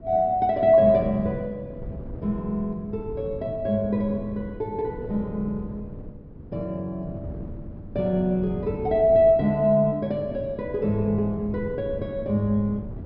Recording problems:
treble cut off; nothing above 5.5 kHz
wind on the microphone; below 230 Hz, SNR 14 dB

